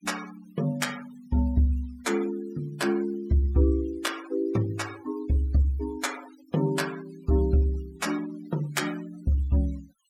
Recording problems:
noise reduction artefacts; signal-to-artefact ratio 18 dB

